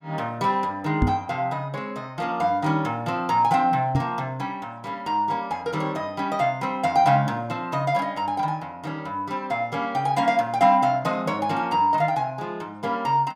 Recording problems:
knock on the microphone; at 1 s and at 4 s; peak +5 dB vs average level

